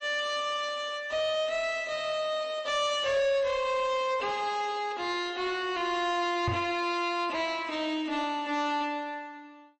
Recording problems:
codec artefacts; MP3, log-spectral distance 2 dB, nothing above 7.8 kHz
distortion; soft clipping, signal-to-distortion ratio 10 dB
microphone thump; at 6.5 s; peak +2 dB vs average level

